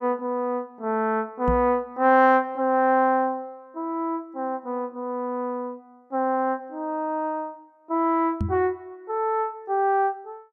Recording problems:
microphone bump; at 1.5 s and at 8.5 s; peak +1 dB vs average level

